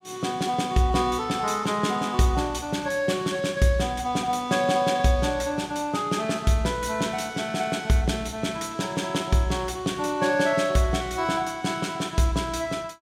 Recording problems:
none

